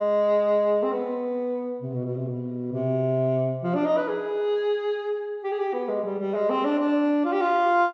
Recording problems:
treble cut off; nothing above 8 kHz

